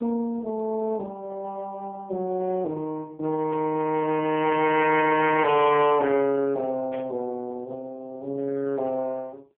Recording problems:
telephone audio; 150 Hz to 3.3 kHz, AMR-NB
distortion; hard clipping, uneven, signal-to-distortion ratio 11 dB
burst of static; at 3.5 s and at 7 s; peak -11 dB vs average level

